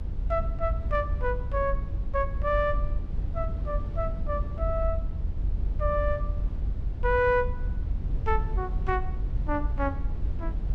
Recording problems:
low-frequency rumble; below 76 Hz, SNR 1 dB

